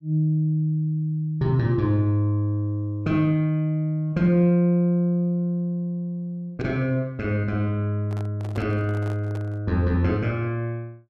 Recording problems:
microphone handling noise; from 8 to 9.5 s; peak -9 dB vs average level

